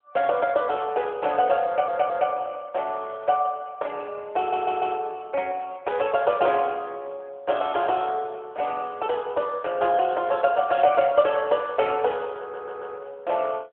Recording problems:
phone line; 300 Hz to 3.3 kHz, AMR-NB
audio stuttering; at 1.5 s, at 4.5 s and at 12 s

